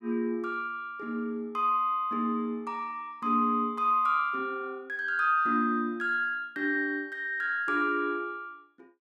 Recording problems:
none

